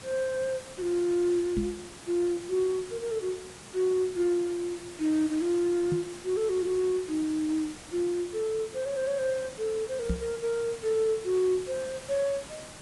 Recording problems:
lossy codec; Vorbis, log-spectral distance 6 dB, nothing above 10.7 kHz
background hiss; slope -3 dB per octave, SNR 15 dB
microphone thump; at 1.5 s, at 6 s and at 10 s; peak +2 dB vs average level

